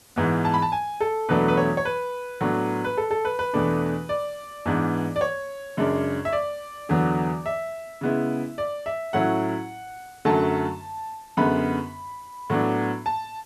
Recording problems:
hiss; slope -2 dB per octave, SNR 26 dB

